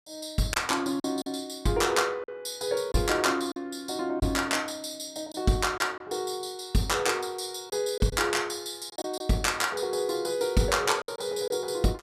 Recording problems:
packet loss; 4% of the sound replaced, filled with silence

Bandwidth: 14.5 kHz